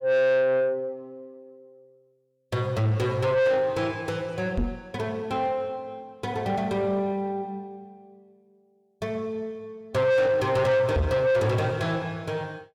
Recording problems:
distorted audio; soft clipping, signal-to-distortion ratio 6 dB
microphone thump; at 4.5 s and at 11 s; peak +4 dB vs average level

